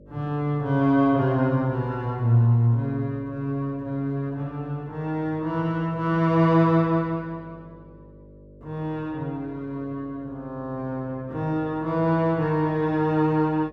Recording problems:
hum; 50 Hz, harmonics up to 600 Hz, SNR 24 dB

